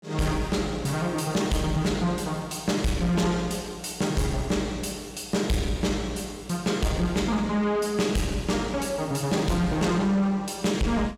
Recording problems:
distorted audio; soft clipping, signal-to-distortion ratio 10 dB

